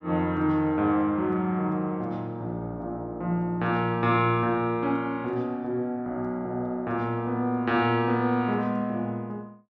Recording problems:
none

